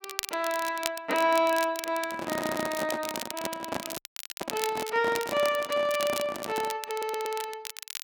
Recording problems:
crackling; vinyl, SNR 9 dB
handling noise; from 2 to 7 s; peak +1 dB vs average level
stutter; at 2.5 s and at 7 s
audio cutting out; at 4 s

